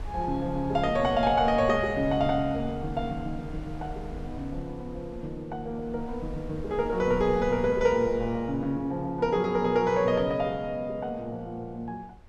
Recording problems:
wind noise; below 80 Hz, SNR 15 dB

